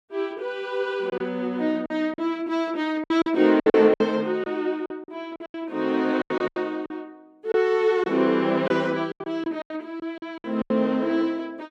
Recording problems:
packet loss; 11% of the sound replaced, filled with silence

